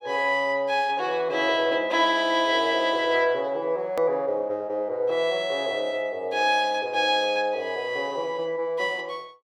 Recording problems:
hard cut with a click; at 4 s

